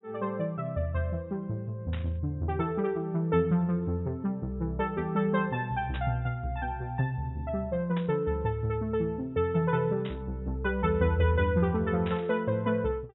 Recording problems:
low-pass filter; nothing above 3.9 kHz
static burst; 5 times, first at 2 s; peak -7 dB vs average level

